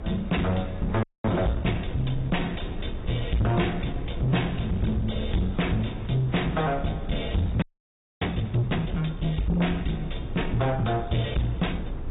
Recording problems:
treble missing; nothing above 3.8 kHz
lossy codec; AAC, log-spectral distance 4 dB
distorted audio; soft clipping, signal-to-distortion ratio 6 dB
hiss; SNR 17 dB
low-frequency rumble; below 110 Hz, strongest tone 24 Hz, SNR 10 dB
frozen audio; at 1 s and at 7.5 s for 0.5 s

